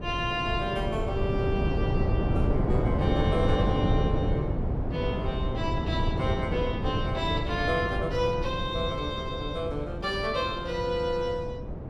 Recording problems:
wind on the microphone; below 280 Hz, SNR -1 dB

